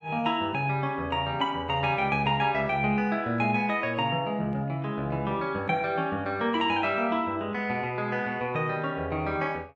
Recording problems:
none

